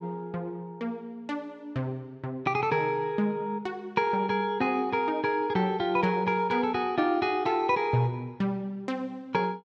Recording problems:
none

